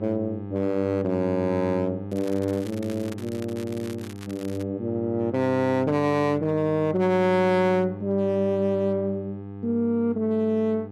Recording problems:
distortion; hard clipping, signal-to-distortion ratio 11 dB
hum; 50 Hz, harmonics up to 1.2 kHz, SNR 11 dB
crackle; from 2 to 4.5 s; loose cable, SNR 21 dB

